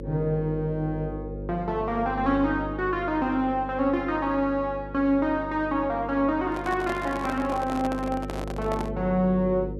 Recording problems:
hum; 50 Hz, harmonics up to 550 Hz, SNR 10 dB
handling noise; from 6.5 to 9 s; peak -4 dB vs average level

